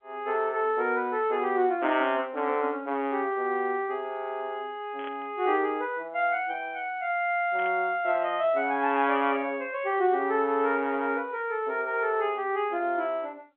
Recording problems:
telephone audio; 240 Hz to 3.4 kHz, G.711
burst of static; at 5 s and at 7.5 s; peak -12 dB vs average level

